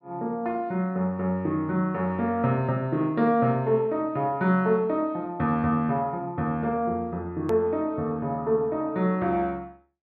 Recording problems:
low-pass filter; nothing above 5.5 kHz
click at an edit; at 7.5 s

